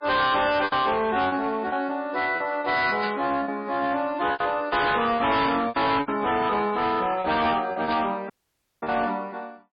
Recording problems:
lossy compression; MP3, log-spectral distance 4 dB, nothing above 4.9 kHz
distorted audio; hard clipping, signal-to-distortion ratio 8 dB
packet loss; 8% of the sound replaced, filled with repeated pitch periods
burst of static; at 3 s, at 5.5 s and at 8 s; peak -5 dB vs average level
dropout; at 8.5 s for 0.5 s

